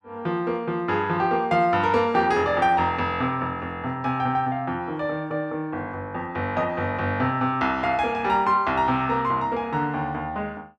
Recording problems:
none

